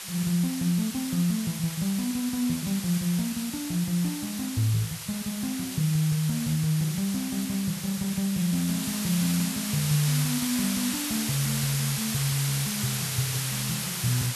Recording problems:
hiss; slope +2 dB per octave, SNR 4 dB

